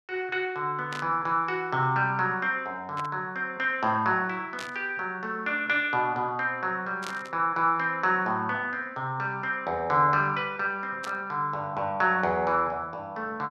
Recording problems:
burst of static; 5 times, first at 1 s; peak -6 dB vs average level

